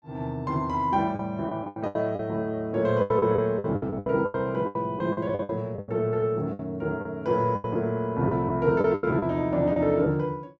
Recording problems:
packet loss; 14% of the sound replaced, filled with the last packet

